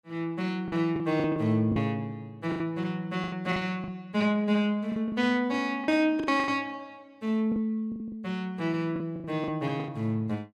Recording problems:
packet loss; 11% of the sound replaced, filled with the last packet

